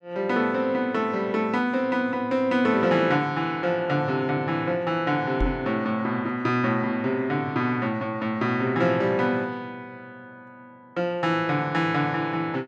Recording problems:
microphone thump; at 5.5 s; peak +2 dB vs average level

